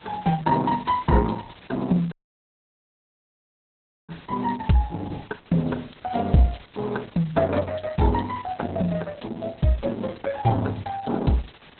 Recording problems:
codec artefacts; Opus, log-spectral distance 8 dB, nothing above 4.1 kHz
background hiss; SNR 24 dB
audio cutting out; at 2 s for 2 s

